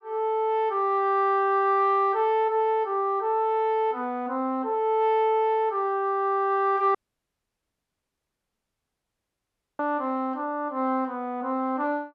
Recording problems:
audio cutting out; at 7 s for 3 s

